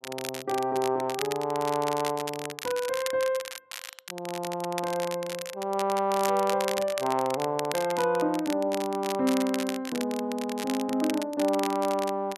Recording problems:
crackle; vinyl, SNR 10 dB

